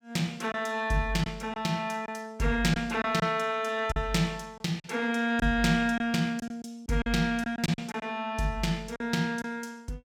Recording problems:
packet loss; 6% of the sound replaced, filled with silence

